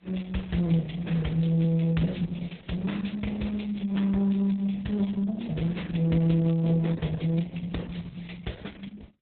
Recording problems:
codec artefacts; AAC, then Opus, log-spectral distance 5 dB, nothing above 3.9 kHz

